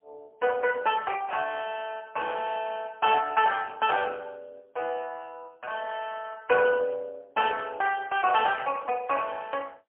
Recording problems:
phone line; 340 Hz to 3.1 kHz, AMR-NB, then MP3

